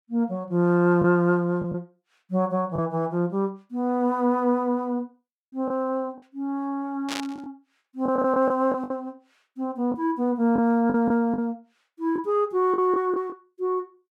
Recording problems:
packet loss; 5% of the sound replaced, filled with the last packet
burst of static; at 7 s; peak -3 dB vs average level

